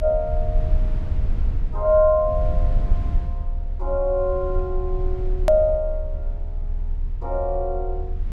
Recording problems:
low-frequency rumble; below 60 Hz, strongest tone 30 Hz, SNR 5 dB
hard cut with a click; at 5.5 s

